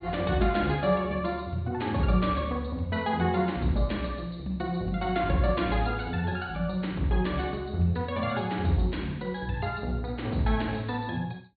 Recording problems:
treble missing; nothing above 4.4 kHz

